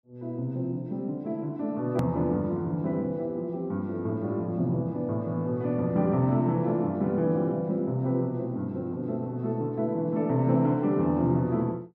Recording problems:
click at an edit; at 2 s

